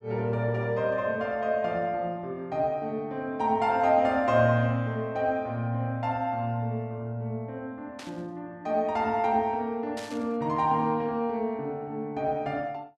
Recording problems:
burst of static; at 8 s and at 10 s; peak -9 dB vs average level

